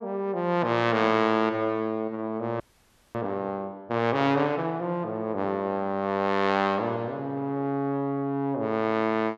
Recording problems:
audio freezing; at 2.5 s for 0.5 s

